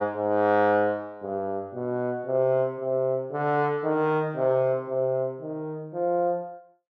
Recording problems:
none

